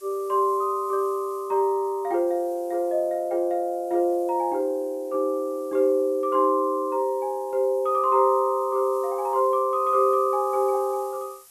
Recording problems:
background hiss; slope +1 dB per octave, SNR 27 dB

